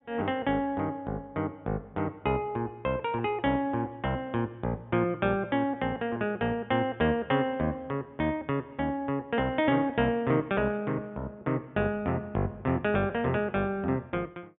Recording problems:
low-pass filter; nothing above 3.6 kHz

